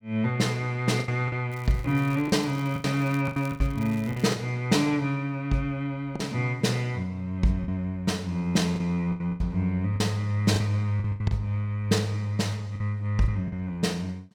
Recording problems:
packet loss; 8% of the sound replaced, filled with the last packet
crackle; from 1.5 to 4.5 s; loose cable, SNR 22 dB

